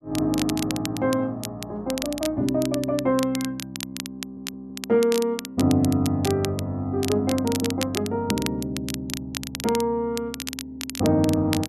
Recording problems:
crackling; vinyl, SNR 10 dB
audio stuttering; at 4 s

